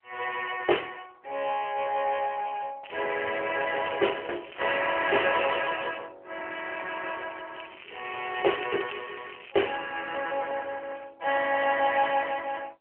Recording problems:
telephone audio; 320 Hz to 3.2 kHz, AMR-NB
crackling; from 3 to 5.5 s and from 7.5 to 10 s; loose cable, SNR 15 dB

